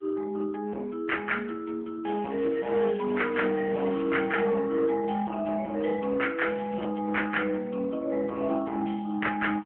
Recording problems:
telephone audio; 110 Hz to 3.3 kHz, AMR-NB
distortion; hard clipping, uneven, signal-to-distortion ratio 11 dB
crackling; from 2 to 4.5 s and at 6.5 s; loose cable, SNR 21 dB

